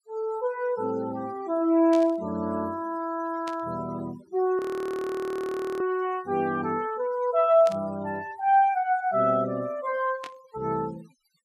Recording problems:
noise reduction artefacts; signal-to-artefact ratio 24 dB
static burst; 4 times, first at 2 s; peak -9 dB vs average level
audio freezing; at 4.5 s for 1 s

